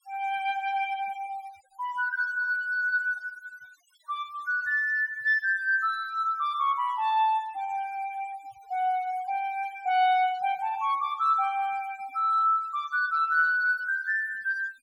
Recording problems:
noise reduction artefacts; signal-to-artefact ratio 25 dB

